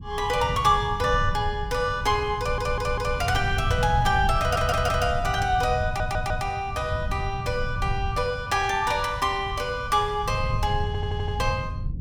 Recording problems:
low-frequency rumble; below 120 Hz, SNR 6 dB
audio stuttering; 4 times, first at 2.5 s

